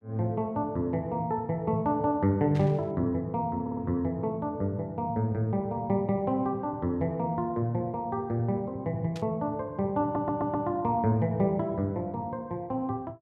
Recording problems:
burst of static; at 2.5 s and at 9 s; peak -11 dB vs average level
audio stuttering; at 3.5 s and at 10 s

